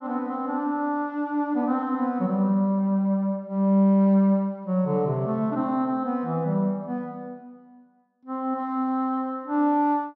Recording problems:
none

